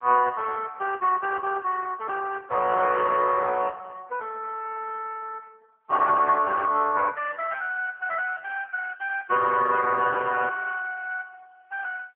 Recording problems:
telephone audio; 340 Hz to 2.7 kHz, AMR-NB

